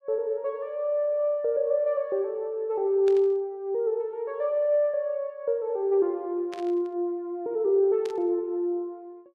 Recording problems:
burst of static; at 3 s, at 6.5 s and at 8 s; peak -12 dB vs average level

